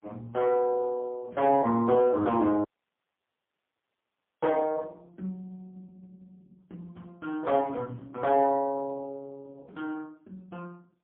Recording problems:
telephone audio; 240 Hz to 3.3 kHz, AMR-NB, then MP3
dropout; at 2.5 s for 2 s

